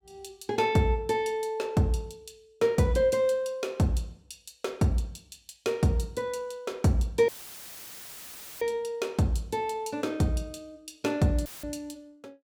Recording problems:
dropout; at 7.5 s for 1.5 s and at 11 s; filled with static

